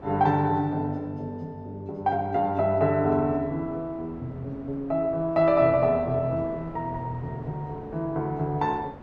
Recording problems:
wind noise; below 690 Hz, SNR 20 dB

